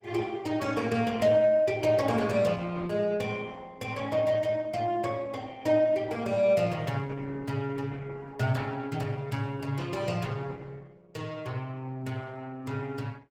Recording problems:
lossy compression; Opus, log-spectral distance 3 dB, nothing above 19 kHz

